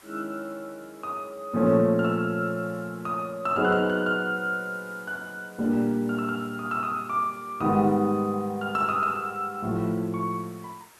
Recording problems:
hiss; SNR 26 dB

